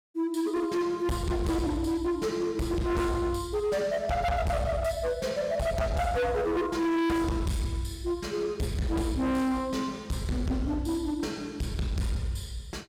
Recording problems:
distorted audio; hard clipping, signal-to-distortion ratio 7 dB

